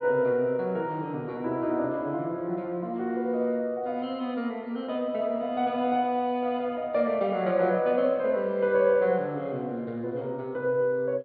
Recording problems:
treble missing; nothing above 4.8 kHz

